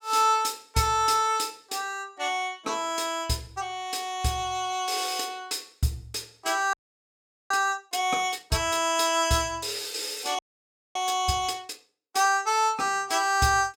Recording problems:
frozen audio; at 6.5 s for 1 s and at 10 s for 0.5 s

